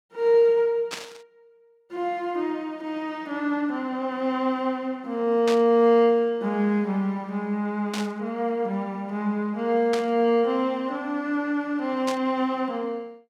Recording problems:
burst of static; 5 times, first at 1 s; peak -3 dB vs average level

